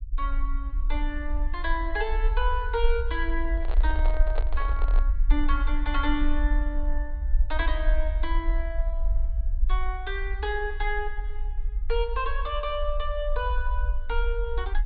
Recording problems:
treble missing; nothing above 4.4 kHz
low-frequency rumble; below 46 Hz, SNR -2 dB
microphone handling noise; from 3.5 to 5 s; peak +1 dB vs average level

